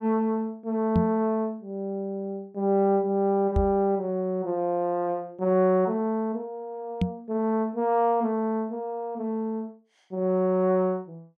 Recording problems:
knock on the microphone; at 1 s, at 3.5 s and at 7 s; peak +6 dB vs average level

